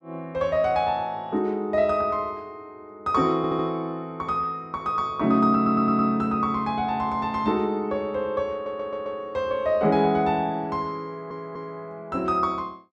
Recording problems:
audio stuttering; 4 times, first at 3.5 s

